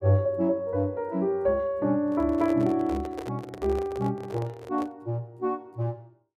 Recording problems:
handling noise; from 2 to 5 s; peak -5 dB vs average level

